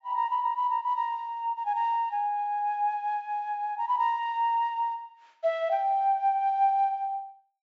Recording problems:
low-pass filter; nothing above 8 kHz

